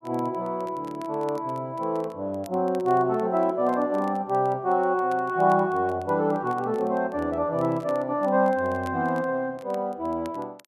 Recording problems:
crackle; vinyl, SNR 29 dB

